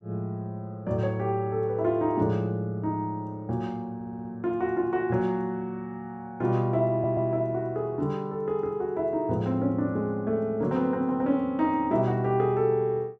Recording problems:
audio stuttering; at 4 s and at 7 s

